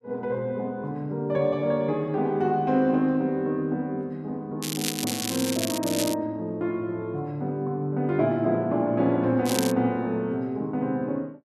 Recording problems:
crackling; from 4.5 to 6 s and at 9.5 s; loose cable, SNR 5 dB

